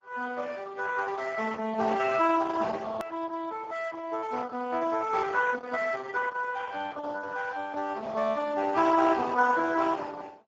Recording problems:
codec artefacts; Opus, then Speex, log-spectral distance 5 dB
edit click; at 3 s

